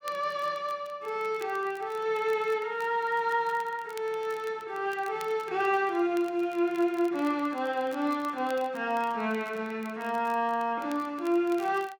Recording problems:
crackling; vinyl, SNR 24 dB

